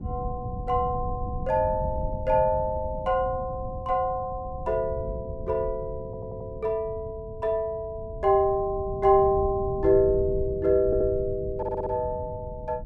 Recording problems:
wind noise; below 140 Hz, SNR 11 dB
stutter; at 6 s, at 11 s and at 12 s

